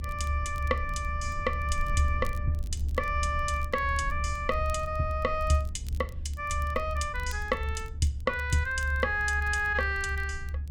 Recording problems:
rumble; below 74 Hz, strongest tone 72 Hz, SNR 4 dB
crackle; vinyl, SNR 25 dB

